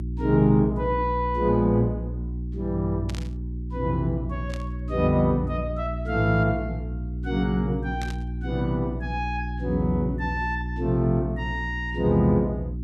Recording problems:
hum; 60 Hz, harmonics up to 360 Hz, SNR 6 dB
burst of static; at 3 s, at 4.5 s and at 8 s; peak -9 dB vs average level

